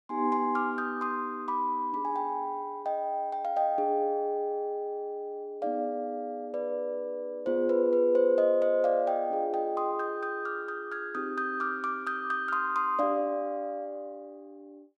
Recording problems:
none

